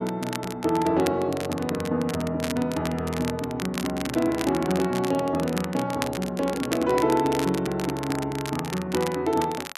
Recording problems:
crackling; vinyl, SNR 11 dB

